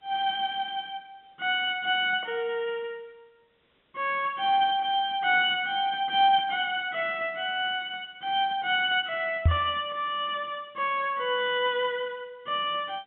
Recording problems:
treble missing; nothing above 3.8 kHz
hiss; SNR 41 dB
microphone bump; at 9.5 s; peak +8 dB vs average level

